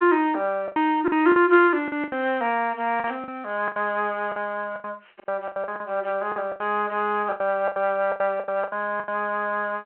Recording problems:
telephone audio; 280 Hz to 3.7 kHz, G.726
packet loss; 14% of the sound replaced, filled with the last packet
static burst; at 3 s; peak -13 dB vs average level

